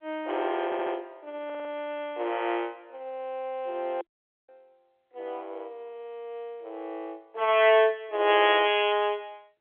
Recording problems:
telephone audio; 300 Hz to 3.4 kHz, G.711
audio stuttering; at 0.5 s and at 1.5 s
dropout; at 4 s

